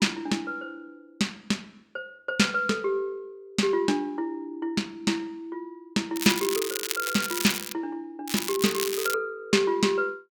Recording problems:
crackling; from 6 to 7.5 s and at 8.5 s; loose cable, SNR 4 dB

